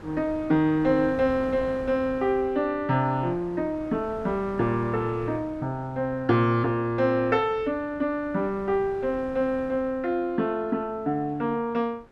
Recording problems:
wind noise; below 670 Hz, SNR 19 dB

